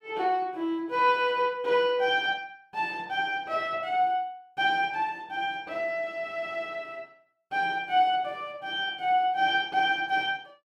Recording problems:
none

